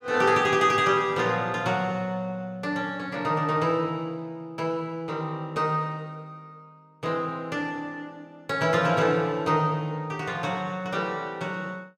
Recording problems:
none

